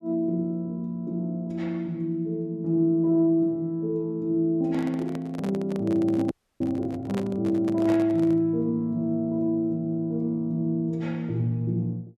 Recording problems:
handling noise; from 4.5 to 8.5 s; peak -6 dB vs average level
frozen audio; at 6.5 s

